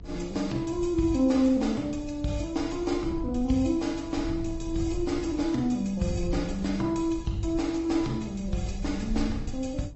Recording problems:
treble cut off; nothing above 7.8 kHz
lossy codec; AAC, then MP3, log-spectral distance 3 dB
hum; 50 Hz, harmonics up to 750 Hz, SNR 23 dB
low-frequency rumble; below 82 Hz, SNR 12 dB

